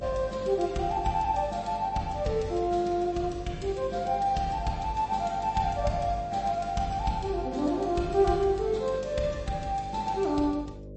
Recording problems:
codec artefacts; MP3, log-spectral distance 2 dB, nothing above 8.2 kHz
hum; 50 Hz, harmonics up to 600 Hz, SNR 16 dB

